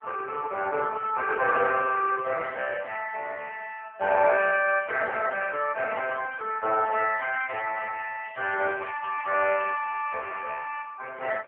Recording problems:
phone line; 340 Hz to 2.3 kHz, AMR-NB
crackle; from 8 to 10 s; loose cable, SNR 27 dB

